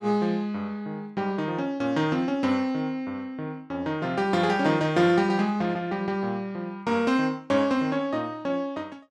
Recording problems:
none

